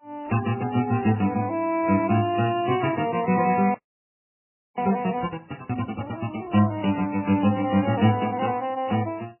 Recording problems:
lossy codec; MP3, then AAC, log-spectral distance 5 dB, nothing above 2.9 kHz
audio freezing; at 3.5 s for 1 s

